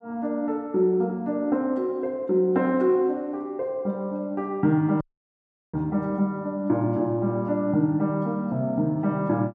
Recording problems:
dropout; at 5 s for 0.5 s

